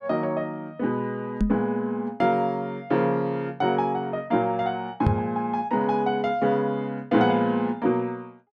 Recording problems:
microphone bump; at 1.5 s and at 5 s; peak +7 dB vs average level

